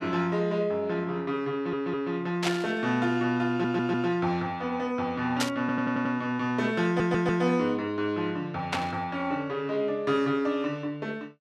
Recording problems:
audio stuttering; 4 times, first at 1.5 s
burst of static; at 2.5 s, at 5.5 s and at 8.5 s; peak +4 dB vs average level

